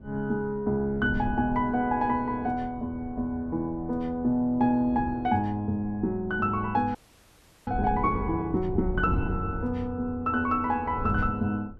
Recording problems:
wind noise; below 140 Hz, SNR 12 dB
audio freezing; at 7 s for 0.5 s

